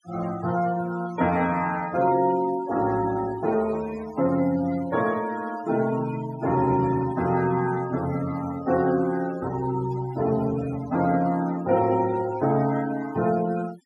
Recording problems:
denoising artefacts; signal-to-artefact ratio 16 dB

